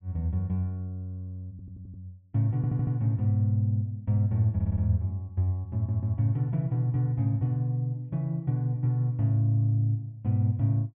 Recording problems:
audio stuttering; 4 times, first at 1.5 s

